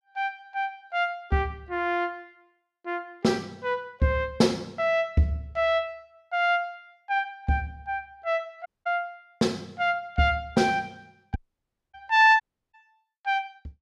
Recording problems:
dropout; at 8.5 s, at 11 s for 0.5 s and at 12 s

